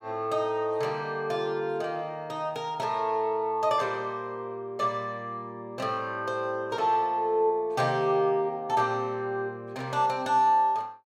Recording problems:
none

